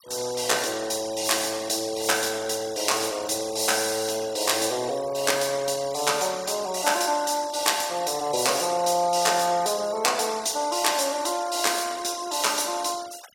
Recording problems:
noise reduction artefacts; signal-to-artefact ratio 18 dB

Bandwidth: 17 kHz